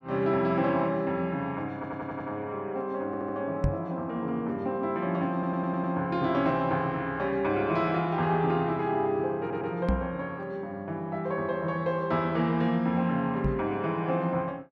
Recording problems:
stutter; 4 times, first at 2 s
microphone bump; at 3.5 s, at 10 s and at 13 s; peak +5 dB vs average level

